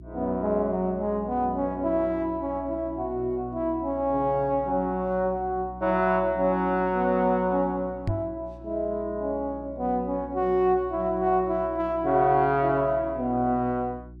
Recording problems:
electrical hum; 60 Hz, harmonics up to 360 Hz, SNR 19 dB
microphone thump; at 8 s; peak +2 dB vs average level

